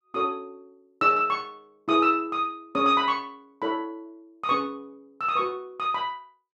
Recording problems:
none

